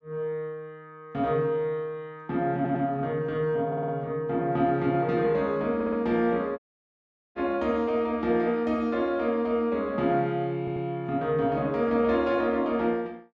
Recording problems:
stutter; 4 times, first at 2.5 s
audio cutting out; at 6.5 s for 1 s

